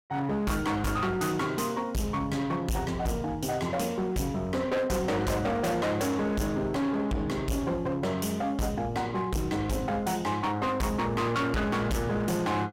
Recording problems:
distortion; hard clipping, signal-to-distortion ratio 6 dB

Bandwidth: 16.5 kHz